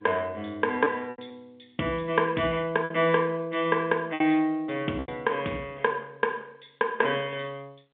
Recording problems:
telephone audio; 220 Hz to 3.6 kHz, G.711
packet loss; 4% of the sound replaced, filled with repeated pitch periods

